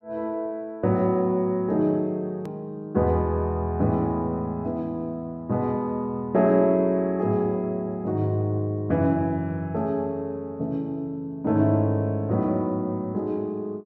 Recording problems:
hard cut with a click; at 2.5 s

